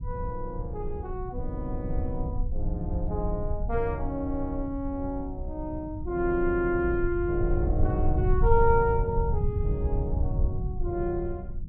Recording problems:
rumble; below 88 Hz, SNR 1 dB

